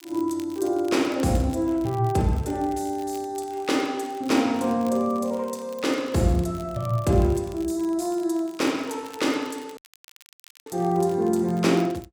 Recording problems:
crackle; vinyl, SNR 25 dB
audio cutting out; at 10 s for 1 s

